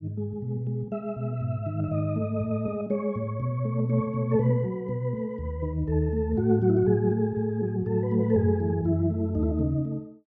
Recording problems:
none

